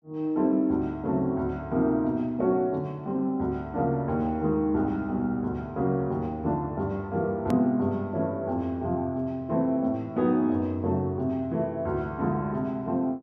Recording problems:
edit click; at 7.5 s

